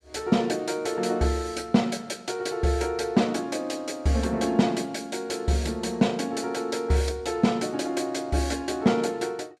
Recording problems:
none

